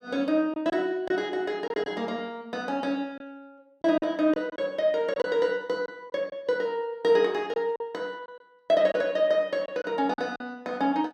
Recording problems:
lost packets; 6% of the sound replaced, filled with silence

